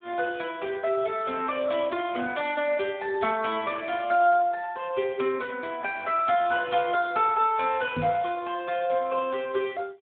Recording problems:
treble missing; nothing above 4 kHz
lossy codec; Speex, log-spectral distance 4 dB
knock on the microphone; at 8 s; peak +1 dB vs average level

